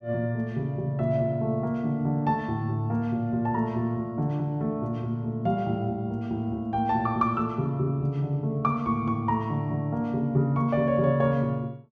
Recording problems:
none

